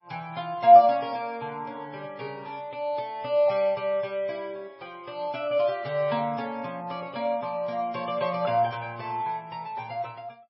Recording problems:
lossy compression; MP3, log-spectral distance 2 dB, nothing above 5.3 kHz

